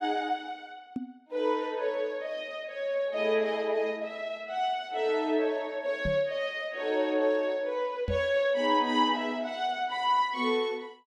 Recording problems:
knock on the microphone; at 1 s, at 6 s and at 8 s; peak -1 dB vs average level

